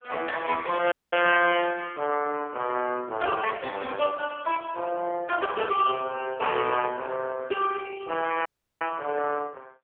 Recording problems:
phone line; 300 Hz to 3.1 kHz, AMR-NB
audio cutting out; at 1 s and at 8.5 s

